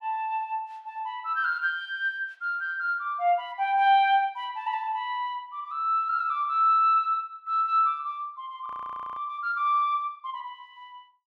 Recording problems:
frozen audio; at 8.5 s for 0.5 s

